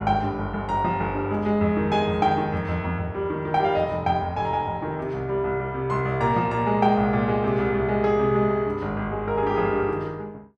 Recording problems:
none

